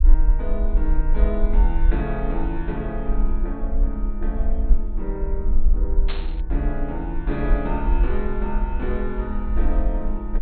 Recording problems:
low-pass filter; nothing above 4.2 kHz
rumble; below 44 Hz, strongest tone 18 Hz, SNR -5 dB
burst of static; at 6 s; peak +1 dB vs average level

